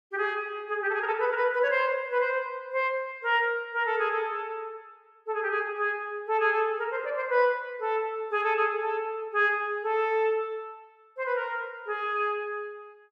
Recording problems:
none

